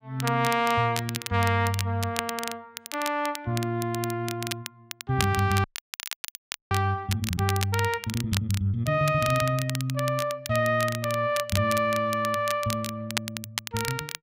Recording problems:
crackling; vinyl, SNR 9 dB
frozen audio; at 5.5 s for 1 s

